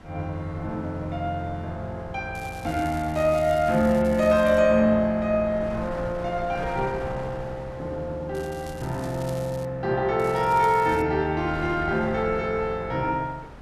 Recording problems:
wind on the microphone; below 870 Hz, SNR 18 dB
crackling; from 2.5 to 4.5 s, from 8.5 to 9.5 s and at 10 s; loose cable, SNR 22 dB

